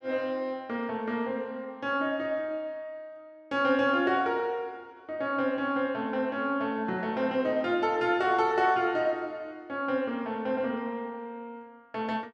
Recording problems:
none

